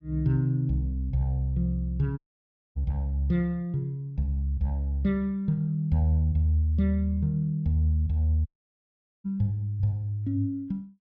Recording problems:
audio cutting out; at 2 s for 0.5 s and at 8.5 s for 1 s

